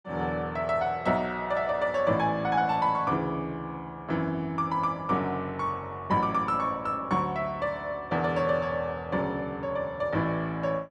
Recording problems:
none

